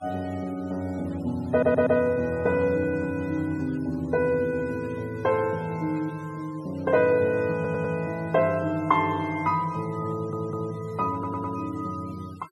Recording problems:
noise reduction artefacts; signal-to-artefact ratio 25 dB
audio stuttering; 4 times, first at 1.5 s

